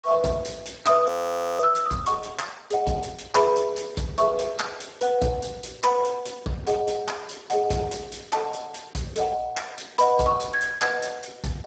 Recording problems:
lossy codec; Speex, log-spectral distance 5 dB, nothing above 18.3 kHz
frozen audio; at 1 s for 0.5 s

